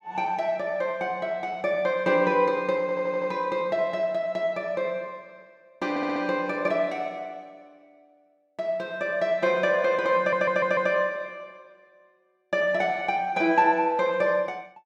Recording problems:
stutter; at 3 s, at 6 s and at 10 s

